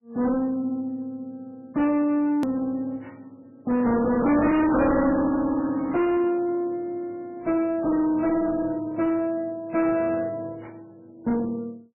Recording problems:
lossy codec; AAC, then MP3, log-spectral distance 2 dB, nothing above 13.1 kHz
distorted audio; soft clipping, signal-to-distortion ratio 6 dB
hard cut with a click; at 2.5 s

